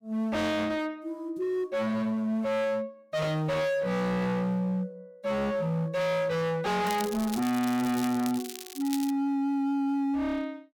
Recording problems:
distorted audio; hard clipping, signal-to-distortion ratio 6 dB
crackling; from 7 to 9 s; loose cable, SNR 12 dB

